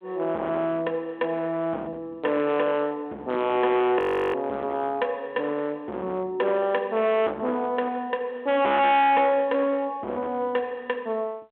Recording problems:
telephone audio; 880 Hz to 3.6 kHz, G.726
distortion; hard clipping, uneven, signal-to-distortion ratio 7 dB
frozen audio; at 4 s

